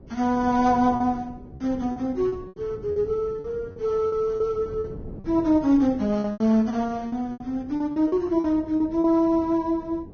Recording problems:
codec artefacts; Vorbis, log-spectral distance 2 dB, nothing above 6.3 kHz
wind on the microphone; below 310 Hz, SNR 18 dB
packet loss; 9% of the sound replaced, filled with repeated pitch periods

